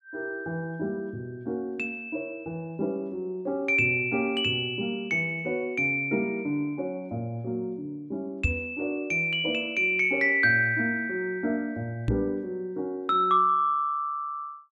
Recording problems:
microphone bump; at 8.5 s and at 12 s; peak +4 dB vs average level

